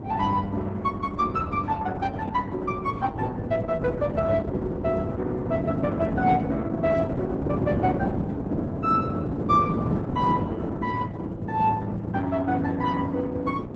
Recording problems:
codec artefacts; Opus, log-spectral distance 2 dB, nothing above 8 kHz
wind on the microphone; below 370 Hz, SNR 3 dB

